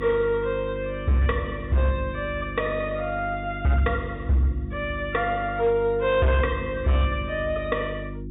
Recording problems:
low-pass filter; nothing above 4 kHz
distortion; hard clipping, signal-to-distortion ratio 12 dB
electrical hum; 50 Hz, harmonics up to 350 Hz, SNR 10 dB

